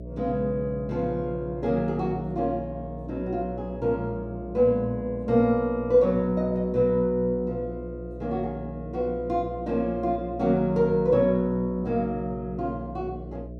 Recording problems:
hum; 60 Hz, harmonics up to 660 Hz, SNR 13 dB

